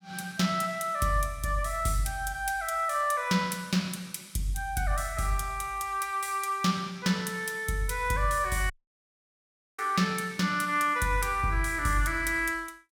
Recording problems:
audio cutting out; at 8.5 s for 1 s

